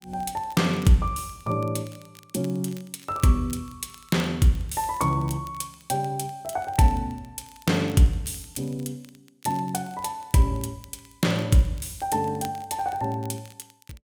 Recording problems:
crackle; vinyl, SNR 25 dB

